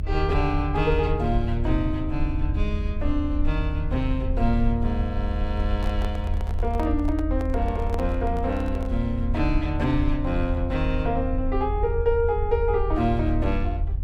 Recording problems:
low-frequency rumble; below 80 Hz, SNR 2 dB
handling noise; from 5.5 to 9 s; peak -4 dB vs average level

